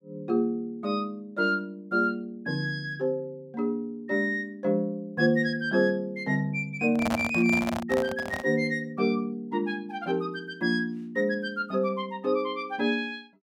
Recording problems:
microphone handling noise; from 7 to 8.5 s; peak +3 dB vs average level

